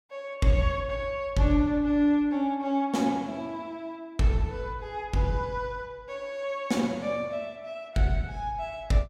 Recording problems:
none

